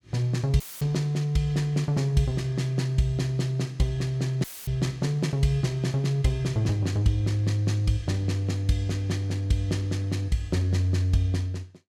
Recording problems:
dropout; at 0.5 s and at 4.5 s; filled with static

